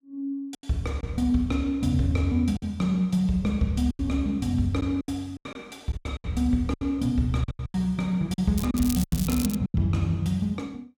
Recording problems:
packet loss; 10% of the sound replaced, filled with silence
crackle; at 8.5 s; loose cable, SNR 10 dB

